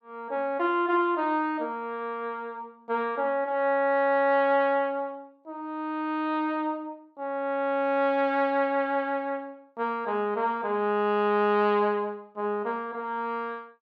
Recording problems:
none

